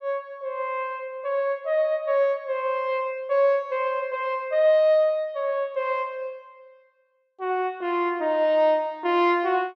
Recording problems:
none

